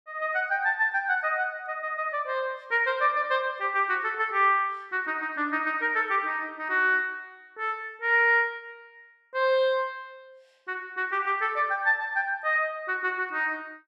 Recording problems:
none

